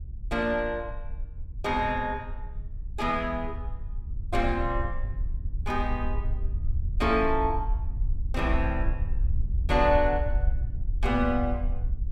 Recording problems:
wind noise; below 66 Hz, SNR 4 dB

